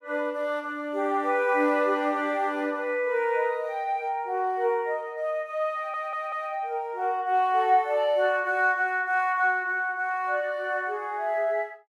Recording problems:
audio stuttering; at 6 s

